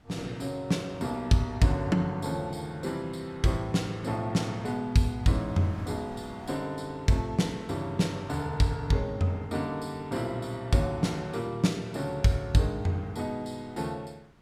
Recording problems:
wind on the microphone; below 810 Hz, SNR 25 dB

